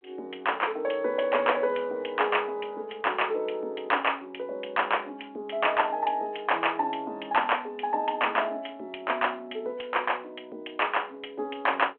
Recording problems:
telephone audio; 280 Hz to 3.4 kHz, G.726

